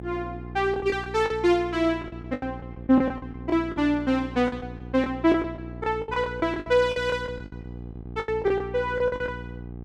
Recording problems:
hum; 60 Hz, harmonics up to 840 Hz, SNR 13 dB
lost packets; 14% of the sound replaced, filled with the last packet

